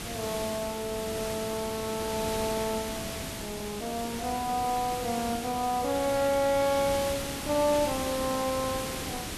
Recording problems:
hiss; slope -2 dB per octave, SNR 5 dB

